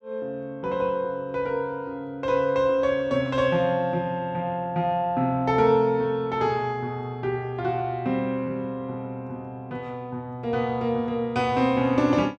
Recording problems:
none

